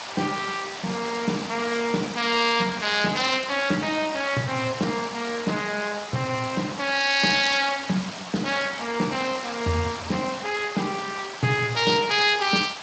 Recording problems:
lossy codec; Speex, log-spectral distance 18 dB
background hiss; SNR 10 dB

